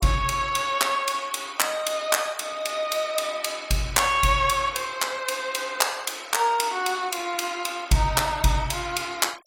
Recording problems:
noise reduction artefacts; signal-to-artefact ratio 21 dB

